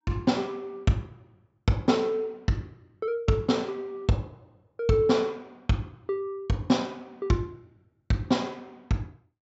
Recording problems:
treble cut off; nothing above 8 kHz

